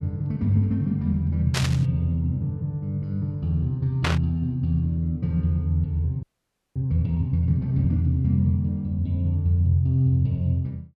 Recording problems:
burst of static; at 1.5 s and at 4 s; peak +2 dB vs average level
frozen audio; at 6 s for 0.5 s

